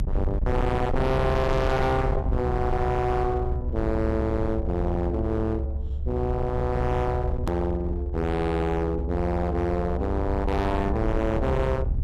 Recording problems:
distorted audio; hard clipping, uneven, signal-to-distortion ratio 6 dB
rumble; below 98 Hz, SNR 3 dB
edit click; at 7.5 s

